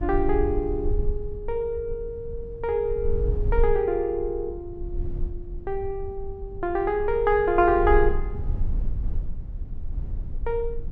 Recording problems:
rumble; below 56 Hz, strongest tone 20 Hz, SNR 7 dB

